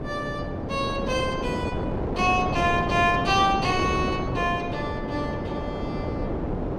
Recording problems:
wind noise; below 530 Hz, SNR 3 dB

